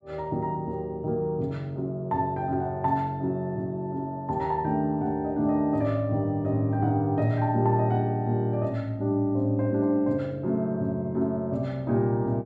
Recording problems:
none

